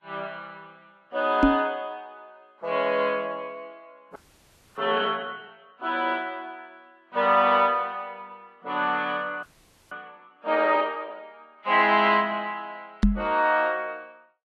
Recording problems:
lossy compression; Vorbis, log-spectral distance 2 dB
microphone bump; at 1.5 s and at 13 s; peak +8 dB vs average level
frozen audio; at 4 s for 0.5 s and at 9.5 s

